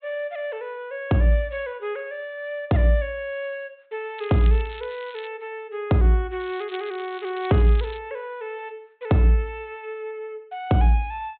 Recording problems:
low-pass filter; nothing above 4 kHz
crackling; from 4 to 5.5 s and from 6.5 to 8 s; loose cable, SNR 20 dB

